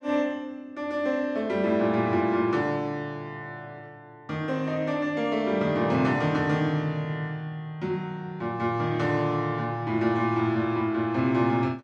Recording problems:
none

